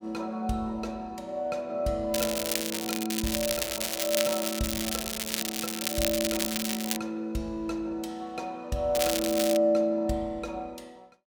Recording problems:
crackle; from 2 to 7 s and at 9 s; loose cable, SNR 0 dB

